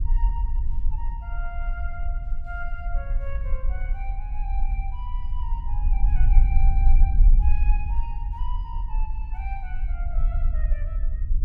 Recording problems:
rumble; below 46 Hz, SNR -15 dB

